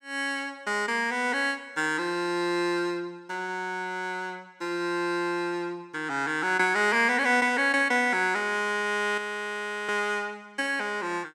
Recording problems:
frozen audio; at 9 s for 0.5 s

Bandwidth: 17 kHz